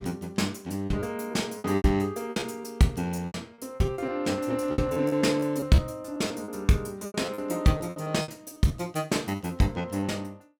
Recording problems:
lost packets; 13% of the sound replaced, filled with repeated pitch periods

